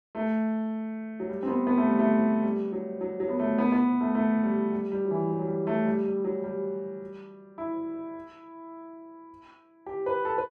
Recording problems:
none

